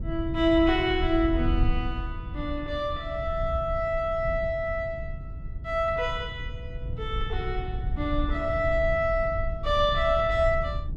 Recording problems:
wind noise; below 82 Hz, SNR 7 dB

